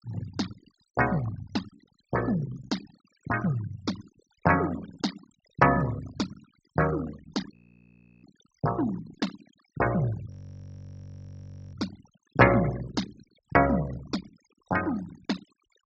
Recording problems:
treble cut off; nothing above 8 kHz
denoising artefacts; signal-to-artefact ratio 15 dB
frozen audio; at 7.5 s for 0.5 s and at 10 s for 1.5 s

